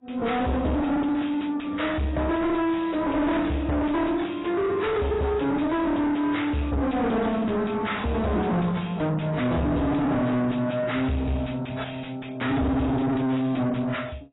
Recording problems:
codec artefacts; AAC, log-spectral distance 5 dB, nothing above 3.8 kHz
distortion; soft clipping, signal-to-distortion ratio 6 dB

